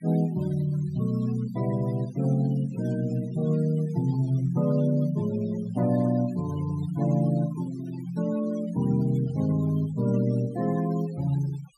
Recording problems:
noise reduction artefacts; signal-to-artefact ratio 19 dB

